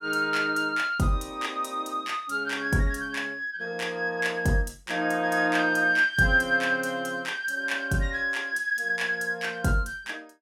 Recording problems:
none

